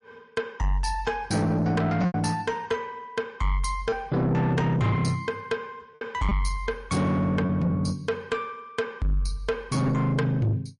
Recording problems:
lossy compression; MP3, log-spectral distance 2 dB, nothing above 10.4 kHz
distorted audio; soft clipping, signal-to-distortion ratio 8 dB
packet loss; 2% of the sound replaced, filled with repeated pitch periods

